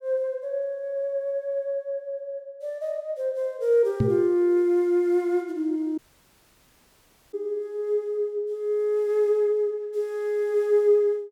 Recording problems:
microphone thump; at 4 s; peak +5 dB vs average level
audio cutting out; at 6 s for 1.5 s

